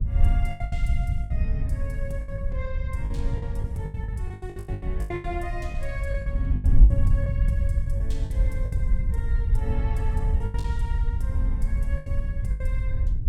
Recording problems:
low-frequency rumble; below 110 Hz, SNR -3 dB
wind noise; below 70 Hz, SNR -10 dB
lost packets; 13% of the sound replaced, filled with the last packet

